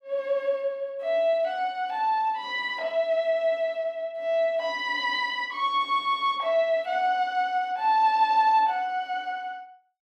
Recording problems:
none

